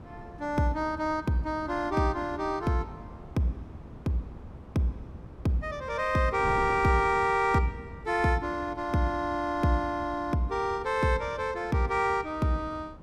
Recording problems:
wind on the microphone; below 360 Hz, SNR 17 dB

